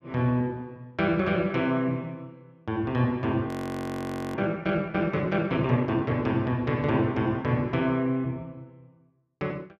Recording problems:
frozen audio; at 3.5 s for 1 s

